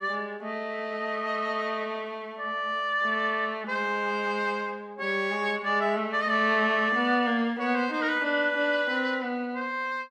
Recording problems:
none

